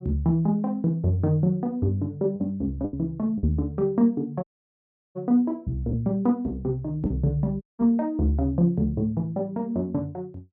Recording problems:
lost packets; 2% of the sound replaced, filled with the last packet
dropout; at 4.5 s for 0.5 s and at 7.5 s

